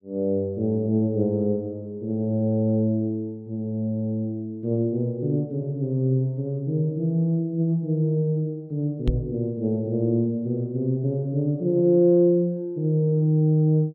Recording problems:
microphone thump; at 9 s; peak +4 dB vs average level

